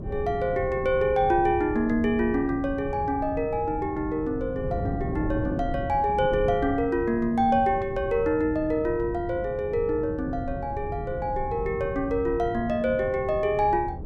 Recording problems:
wind noise; below 220 Hz, SNR 10 dB

